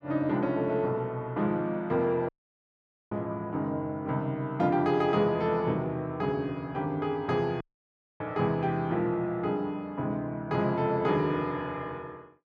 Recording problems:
audio cutting out; at 2.5 s for 1 s and at 7.5 s for 0.5 s

